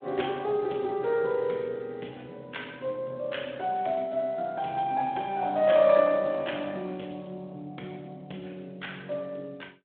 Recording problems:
phone line; 260 Hz to 3.5 kHz, Speex

